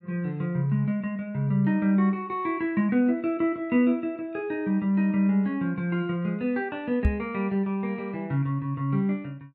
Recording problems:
knock on the microphone; at 7 s; peak +7 dB vs average level

